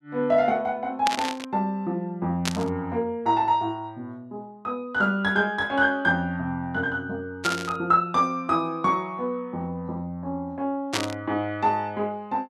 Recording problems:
burst of static; 4 times, first at 1 s; peak +4 dB vs average level

